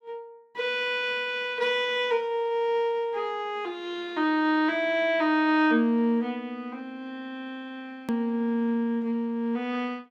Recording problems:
hard cut with a click; at 8 s

